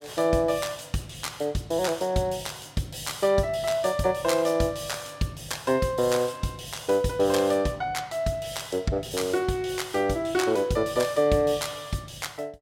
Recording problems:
none

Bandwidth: 16 kHz